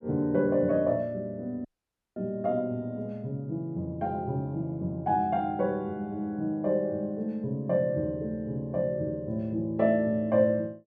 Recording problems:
dropout; at 1.5 s for 0.5 s

